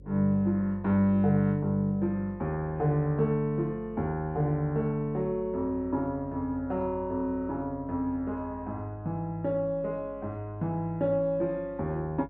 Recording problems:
hum; 50 Hz, harmonics up to 550 Hz, SNR 21 dB

